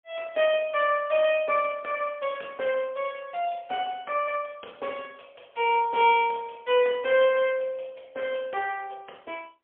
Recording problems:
phone line; 320 Hz to 3.3 kHz, AMR-NB, then MP3

